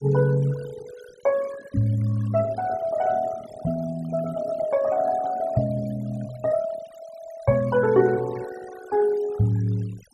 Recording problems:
denoising artefacts; signal-to-artefact ratio 19 dB

